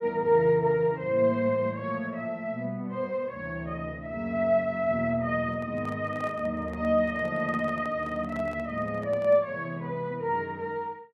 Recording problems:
microphone handling noise; from 5.5 to 9.5 s; peak -12 dB vs average level

